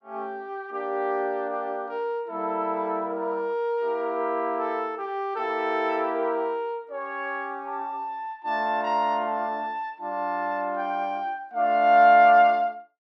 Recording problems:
none

